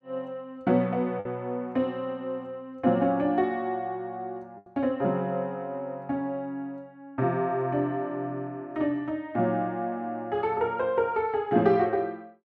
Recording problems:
packet loss; 1.1% of the sound replaced, filled with the last packet

